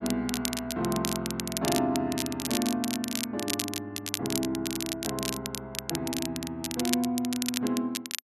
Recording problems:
crackle; vinyl, SNR 2 dB

